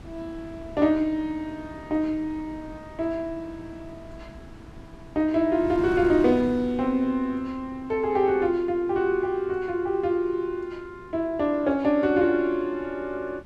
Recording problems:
wind on the microphone; below 340 Hz, SNR 19 dB

